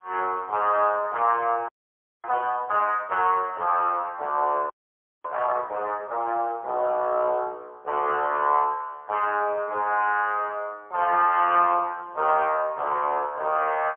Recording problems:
telephone audio; 320 Hz to 3.1 kHz, AMR-NB, then MP3
audio freezing; at 1.5 s for 0.5 s and at 4.5 s for 0.5 s

